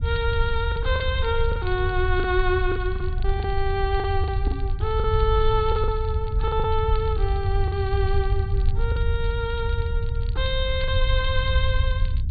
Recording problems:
treble missing; nothing above 4.6 kHz
rumble; below 84 Hz, SNR -1 dB
crackle; vinyl, SNR 23 dB
lost packets; 6% of the sound replaced, filled with the last packet
microphone bump; at 4.5 s; peak -1 dB vs average level

